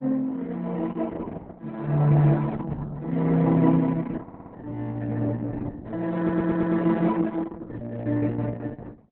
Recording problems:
codec artefacts; Opus, log-spectral distance 3 dB, nothing above 3.9 kHz
stutter; at 4 s and at 6 s

